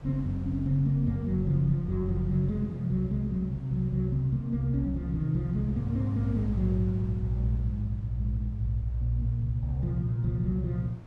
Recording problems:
wind on the microphone; below 350 Hz, SNR 21 dB

